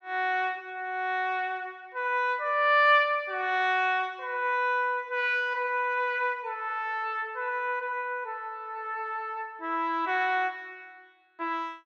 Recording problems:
none

